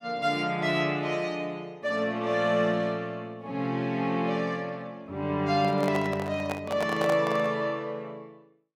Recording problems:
handling noise; from 5.5 to 7.5 s; peak 0 dB vs average level

